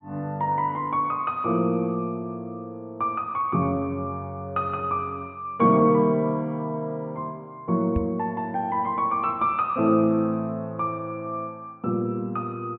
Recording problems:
treble missing; nothing above 4 kHz
microphone thump; at 8 s; peak +2 dB vs average level

